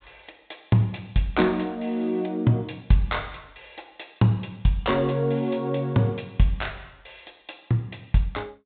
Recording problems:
low-pass filter; nothing above 4 kHz

